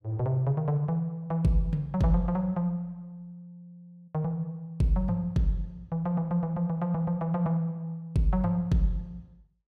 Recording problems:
none

